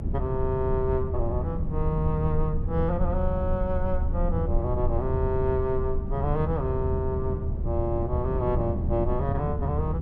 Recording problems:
rumble; below 78 Hz, SNR 3 dB
wind noise; below 190 Hz, SNR 4 dB

